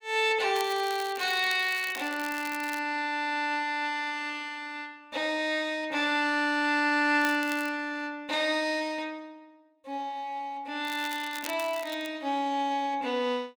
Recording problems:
crackle; from 0.5 to 3 s, at 7 s and from 11 to 12 s; loose cable, SNR 14 dB

